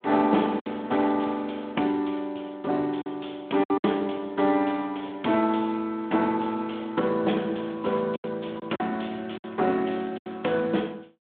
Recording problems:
telephone audio; 170 Hz to 3.6 kHz, Speex
lost packets; 5% of the sound replaced, filled with silence

